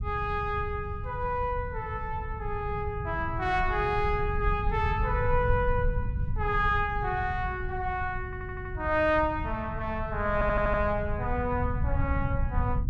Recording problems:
low-frequency rumble; below 110 Hz, SNR 4 dB
stutter; at 8.5 s and at 10 s

